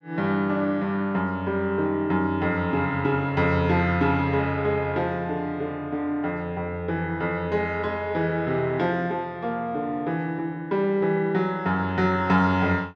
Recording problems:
none

